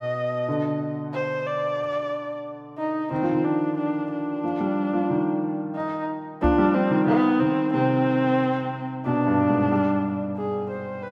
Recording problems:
microphone bump; at 6.5 s; peak +3 dB vs average level

